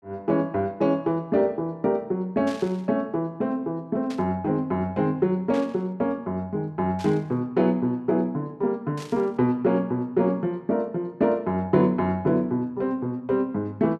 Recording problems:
burst of static; 5 times, first at 2.5 s; peak -11 dB vs average level

